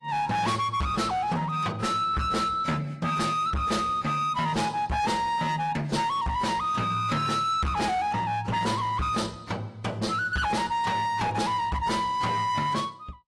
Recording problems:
lossy compression; AAC, log-spectral distance 3 dB, nothing above 11 kHz
distorted audio; hard clipping, signal-to-distortion ratio 7 dB

